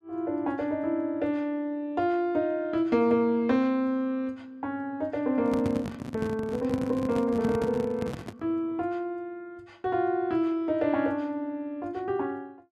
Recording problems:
handling noise; from 5.5 to 8.5 s; peak -1 dB vs average level

